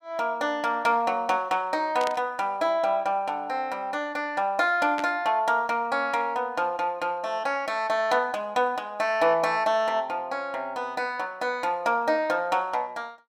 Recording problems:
burst of static; at 2 s and at 5 s; peak -4 dB vs average level

